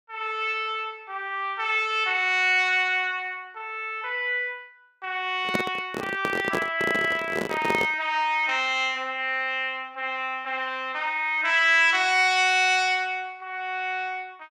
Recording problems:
microphone handling noise; from 5.5 to 8 s; peak +1 dB vs average level

